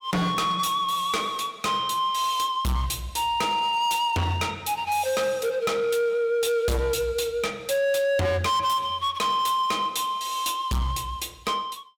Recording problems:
distorted audio; hard clipping, signal-to-distortion ratio 7 dB

